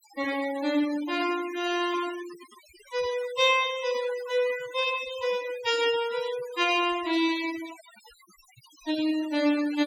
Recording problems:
noise reduction artefacts; signal-to-artefact ratio 15 dB

